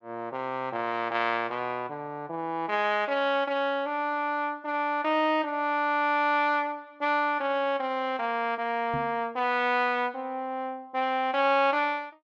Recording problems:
knock on the microphone; at 9 s; peak -5 dB vs average level

